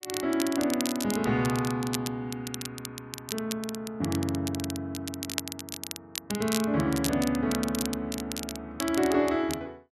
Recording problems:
crackle; vinyl, SNR 8 dB

